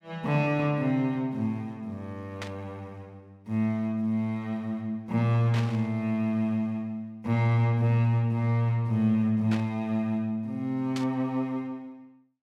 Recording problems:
static burst; 4 times, first at 2.5 s; peak -6 dB vs average level

